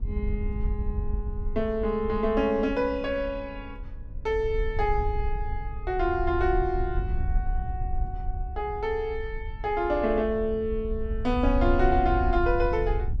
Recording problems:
wind on the microphone; below 66 Hz, SNR 5 dB

